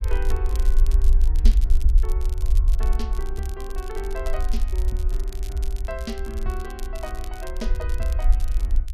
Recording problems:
low-frequency rumble; below 50 Hz, strongest tone 22 Hz, SNR -10 dB
crackling; vinyl, SNR 11 dB

